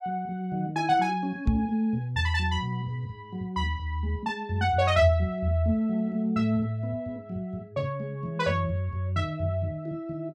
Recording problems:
microphone thump; at 1.5 s; peak +6 dB vs average level

